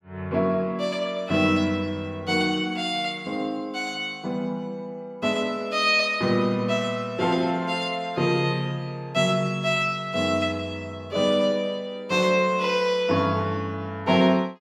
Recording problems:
none

